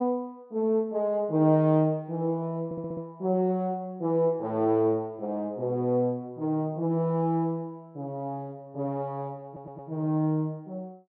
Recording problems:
audio stuttering; at 2.5 s and at 9.5 s

